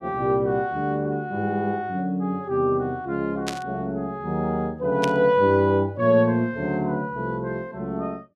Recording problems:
burst of static; at 3.5 s and at 5 s; peak -1 dB vs average level

